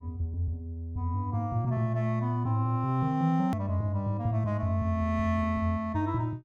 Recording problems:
hard cut with a click; at 3.5 s

